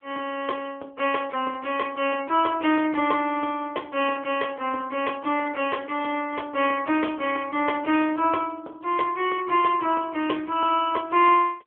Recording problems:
telephone audio; 280 Hz to 3.3 kHz, AMR-NB

